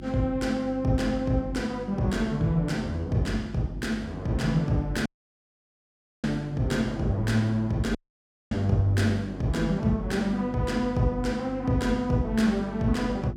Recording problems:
hum; 50 Hz, harmonics up to 350 Hz, SNR 14 dB
dropout; at 5 s for 1 s and at 8 s for 0.5 s

